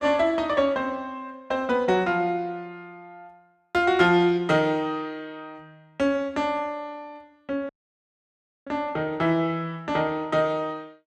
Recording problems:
audio cutting out; at 7.5 s for 1 s

